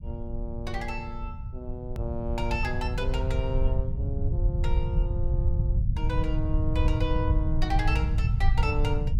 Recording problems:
low-frequency rumble; below 96 Hz, SNR -5 dB
click at an edit; at 2 s

